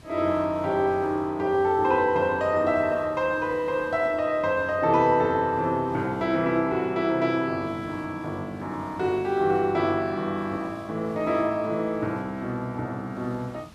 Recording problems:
hiss; slope -4 dB per octave, SNR 25 dB

